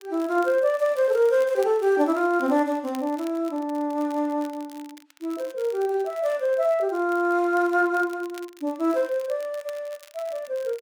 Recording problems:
crackling; vinyl, SNR 25 dB

